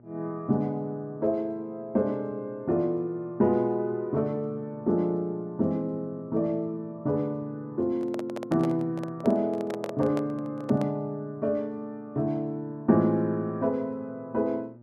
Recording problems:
hum; 60 Hz, harmonics up to 960 Hz, SNR 24 dB
microphone handling noise; from 8 to 11 s; peak -3 dB vs average level

